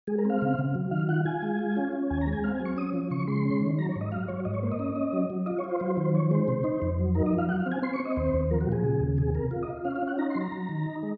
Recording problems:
none

